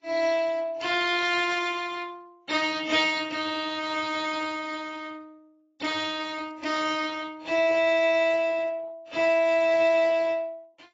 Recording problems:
lossy codec; Speex, then AAC, log-spectral distance 5 dB, nothing above 7.3 kHz

